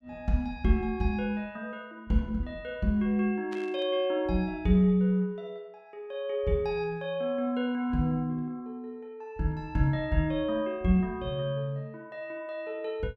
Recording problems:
burst of static; at 3.5 s; peak -13 dB vs average level

